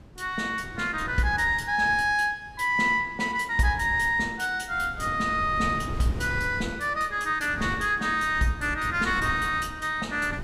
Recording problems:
wind on the microphone; below 250 Hz, SNR 14 dB

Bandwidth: 15 kHz